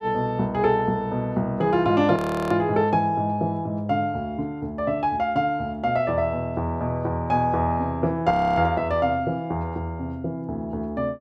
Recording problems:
audio freezing; at 2 s and at 8.5 s

